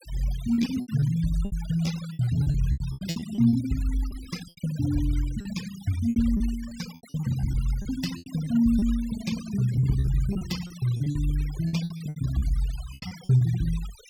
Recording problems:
noise reduction artefacts; signal-to-artefact ratio 17 dB
packet loss; 14% of the sound replaced, filled with repeated pitch periods

